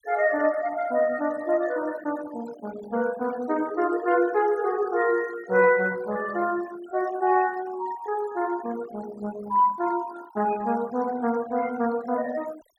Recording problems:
noise reduction artefacts; signal-to-artefact ratio 18 dB

